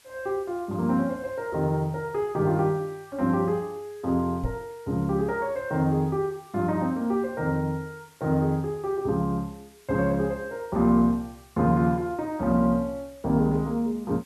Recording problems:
hiss; slope 0 dB per octave, SNR 29 dB
knock on the microphone; at 4.5 s; peak 0 dB vs average level

